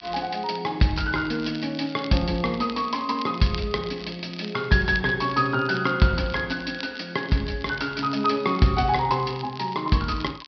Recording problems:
low-pass filter; nothing above 5.5 kHz
crackling; vinyl, SNR 17 dB

